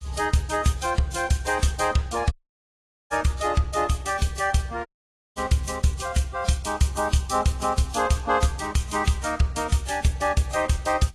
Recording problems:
lossy compression; Vorbis, then AAC, log-spectral distance 4 dB, nothing above 12 kHz
audio cutting out; at 2.5 s for 1 s and at 5 s for 0.5 s

